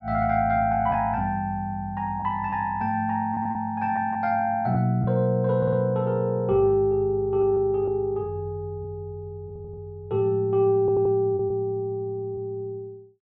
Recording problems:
packet loss; 3% of the sound replaced, filled with repeated pitch periods
stutter; 4 times, first at 3.5 s

